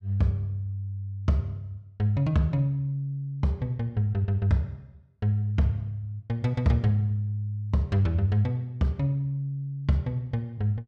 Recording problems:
none

